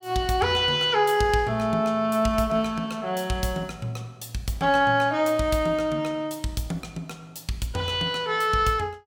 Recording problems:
none

